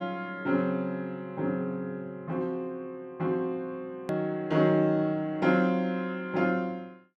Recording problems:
edit click; at 4 s

